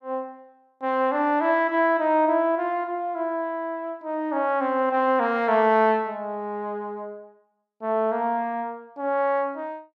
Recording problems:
none

